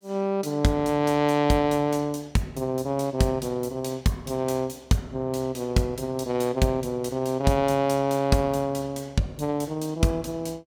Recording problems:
none

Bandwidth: 17 kHz